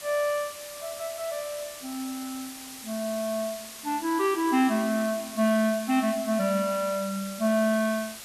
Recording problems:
background hiss; slope +1 dB per octave, SNR 12 dB
crackling; at 1 s and from 3.5 to 6 s; loose cable, SNR 29 dB

